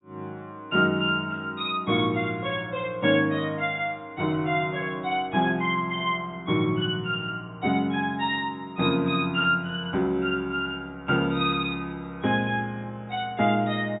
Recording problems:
treble missing; nothing above 4 kHz

